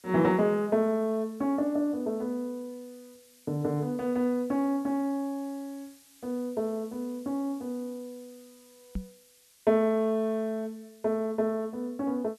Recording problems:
hiss; slope +3 dB per octave, SNR 27 dB
microphone thump; at 9 s; peak -1 dB vs average level

